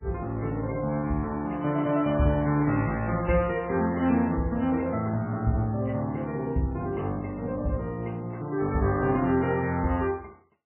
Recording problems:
codec artefacts; MP3, log-spectral distance 2 dB, nothing above 3 kHz

